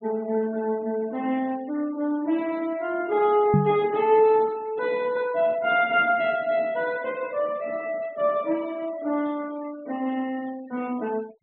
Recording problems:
low-pass filter; nothing above 4 kHz
denoising artefacts; signal-to-artefact ratio 23 dB
microphone thump; at 3.5 s; peak +7 dB vs average level

